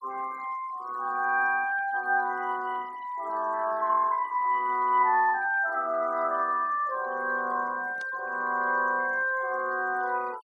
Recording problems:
denoising artefacts; signal-to-artefact ratio 23 dB
burst of static; at 8 s; peak -16 dB vs average level

